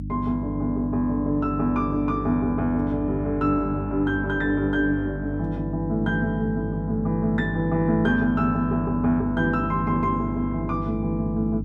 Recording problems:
mains hum; 50 Hz, harmonics up to 300 Hz, SNR 7 dB

